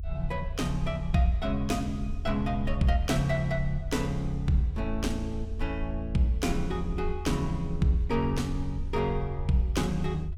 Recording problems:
rumble; below 78 Hz, SNR 7 dB

